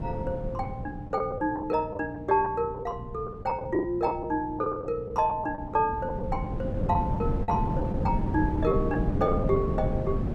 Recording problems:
hum; 60 Hz, harmonics up to 420 Hz, SNR 16 dB
wind on the microphone; below 240 Hz, SNR 2 dB
packet loss; 9% of the sound replaced, filled with the last packet

